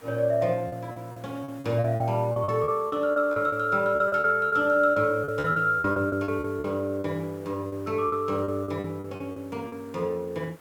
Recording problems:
background hiss; SNR 26 dB
packet loss; 14% of the sound replaced, filled with repeated pitch periods

